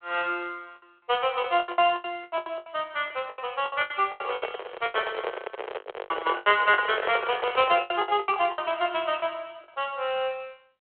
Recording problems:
phone line; 320 Hz to 3.3 kHz, G.726
lost packets; 16% of the sound replaced, filled with the last packet
microphone handling noise; from 4 to 8 s; peak +1 dB vs average level

